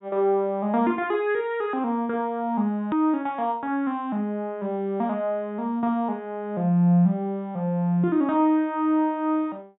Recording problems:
treble cut off; nothing above 4 kHz
edit click; at 3 s

